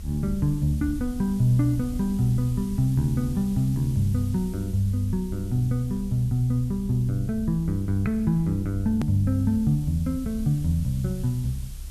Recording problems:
hiss; slope +2 dB per octave, SNR 24 dB
rumble; below 68 Hz, strongest tone 34 Hz, SNR 13 dB
hard cut with a click; at 9 s

